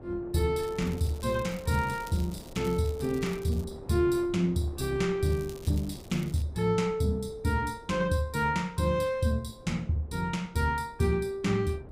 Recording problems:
wind noise; below 430 Hz, SNR 19 dB
crackle; from 0.5 to 3.5 s and from 5 to 6.5 s; loose cable, SNR 21 dB

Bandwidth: 15.5 kHz